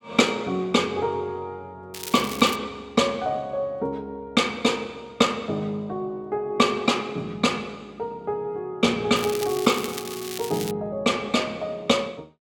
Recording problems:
crackling; at 2 s and from 9 to 11 s; loose cable, SNR 10 dB

